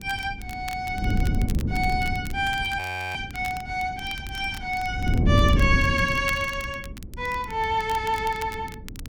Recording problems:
wind on the microphone; below 180 Hz, SNR 1 dB
crackle; vinyl, SNR 17 dB
frozen audio; at 3 s

